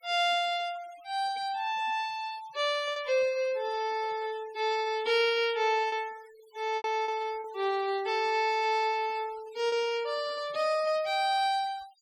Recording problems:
denoising artefacts; signal-to-artefact ratio 21 dB
lost packets; 2% of the sound replaced, filled with repeated pitch periods

